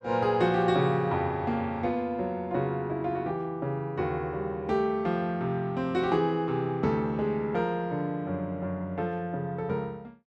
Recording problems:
none

